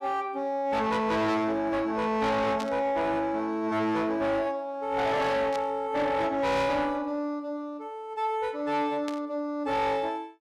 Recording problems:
distorted audio; soft clipping, signal-to-distortion ratio 8 dB
burst of static; at 2.5 s, at 5.5 s and at 9 s; peak -6 dB vs average level

